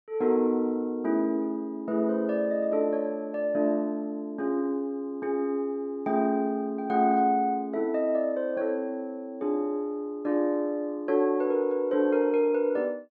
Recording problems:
none

